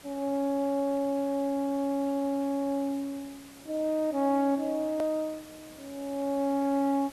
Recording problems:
lossy codec; Vorbis, log-spectral distance 3 dB, nothing above 13.1 kHz
background hiss; slope -3 dB per octave, SNR 21 dB
edit click; at 5 s

